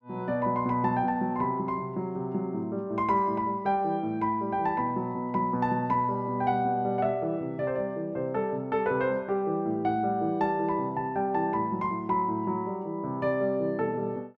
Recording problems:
none

